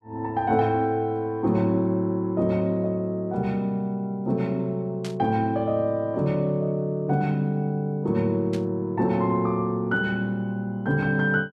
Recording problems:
burst of static; at 5 s and at 8.5 s; peak -9 dB vs average level

